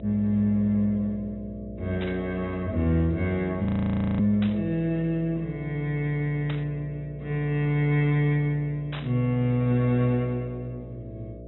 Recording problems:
treble cut off; nothing above 3.9 kHz
hum; 60 Hz, harmonics up to 660 Hz, SNR 16 dB
burst of static; 4 times, first at 2 s; peak -7 dB vs average level
frozen audio; at 3.5 s for 0.5 s

